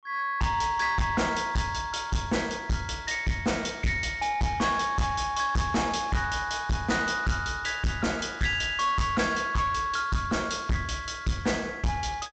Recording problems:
treble cut off; nothing above 8 kHz
distortion; soft clipping, signal-to-distortion ratio 6 dB

